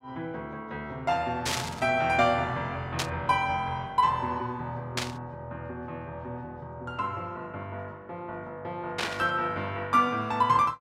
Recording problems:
static burst; 4 times, first at 1.5 s; peak +4 dB vs average level

